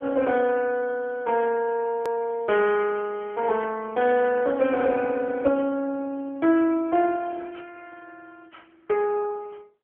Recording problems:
phone line; 260 Hz to 3.3 kHz, AMR-NB
click at an edit; at 2 s

